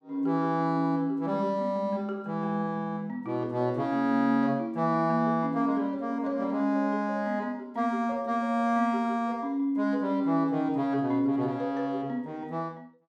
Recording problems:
none

